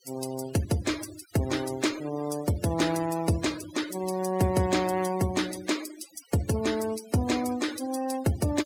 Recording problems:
denoising artefacts; signal-to-artefact ratio 13 dB

